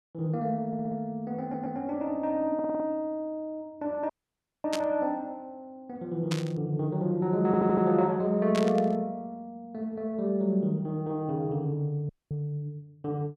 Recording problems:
stutter; 4 times, first at 0.5 s
audio cutting out; at 4 s for 0.5 s and at 12 s
burst of static; at 4.5 s, at 6.5 s and at 8.5 s; peak -1 dB vs average level

